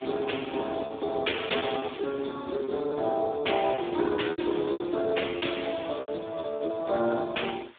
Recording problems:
telephone audio; 260 Hz to 3.7 kHz, Speex
background hiss; SNR 27 dB
packet loss; 10% of the sound replaced, filled with repeated pitch periods

